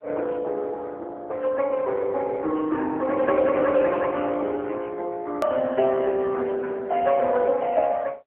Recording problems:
phone line; 260 Hz to 3.3 kHz, AMR-NB
edit click; at 5.5 s

